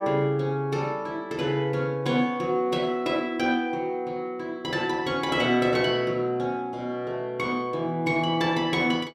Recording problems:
none

